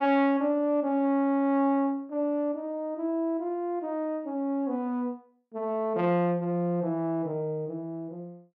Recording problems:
none

